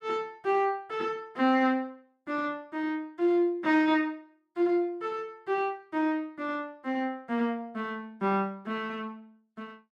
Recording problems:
none

